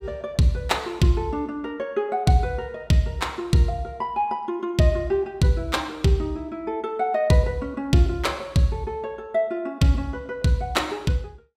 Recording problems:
none

